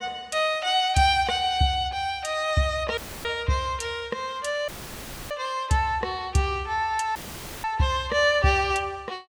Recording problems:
dropout; at 3 s, at 4.5 s for 0.5 s and at 7 s; filled with static

